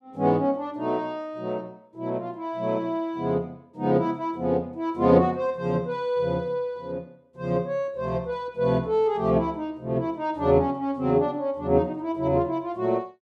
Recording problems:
none

